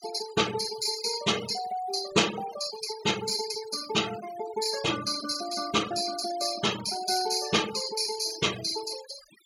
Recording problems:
noise reduction artefacts; signal-to-artefact ratio 12 dB

